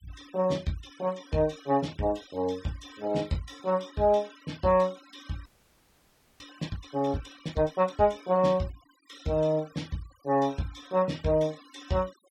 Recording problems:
denoising artefacts; signal-to-artefact ratio 23 dB
audio freezing; at 5.5 s for 1 s

